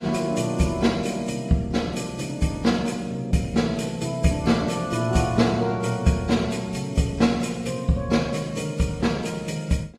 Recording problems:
lossy compression; AAC, log-spectral distance 3 dB, nothing above 13.1 kHz

